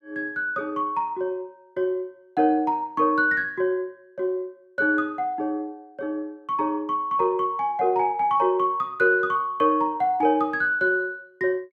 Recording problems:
none

